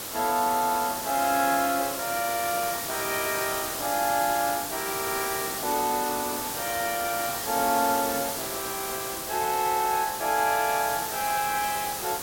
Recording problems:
background hiss; slope -2 dB per octave, SNR 3 dB

